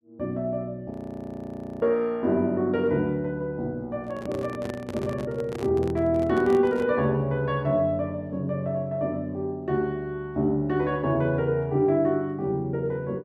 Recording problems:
audio freezing; at 1 s for 1 s
microphone handling noise; from 4 to 7 s; peak -5 dB vs average level

